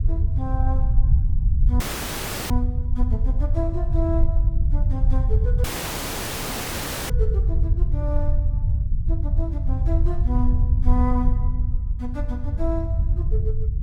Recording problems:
rumble; below 78 Hz, SNR -9 dB
audio cutting out; at 2 s for 0.5 s and at 5.5 s for 1.5 s

